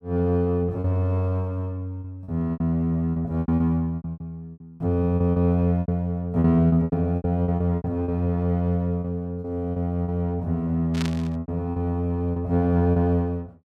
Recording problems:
lost packets; 12% of the sound replaced, filled with repeated pitch periods
burst of static; at 11 s; peak -4 dB vs average level

